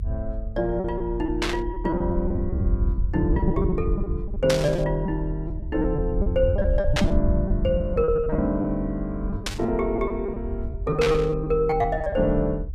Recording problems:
low-frequency rumble; below 84 Hz, SNR 4 dB
lost packets; 12% of the sound replaced, filled with repeated pitch periods
burst of static; 5 times, first at 1.5 s; peak +4 dB vs average level

